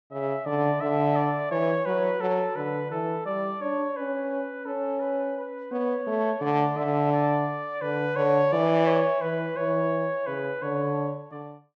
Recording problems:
none

